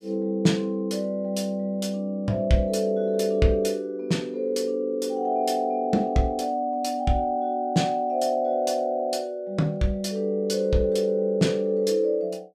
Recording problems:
none

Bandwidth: 14.5 kHz